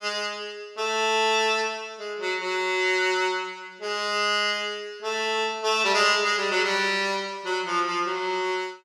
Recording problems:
none

